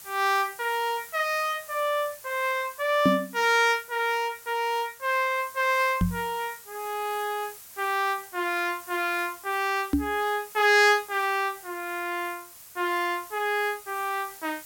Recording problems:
hiss; slope +1 dB per octave, SNR 17 dB
microphone thump; at 3 s, at 6 s and at 10 s; peak +7 dB vs average level

